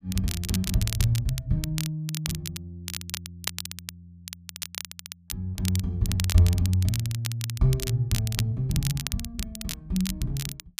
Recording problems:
crackle; vinyl, SNR 8 dB

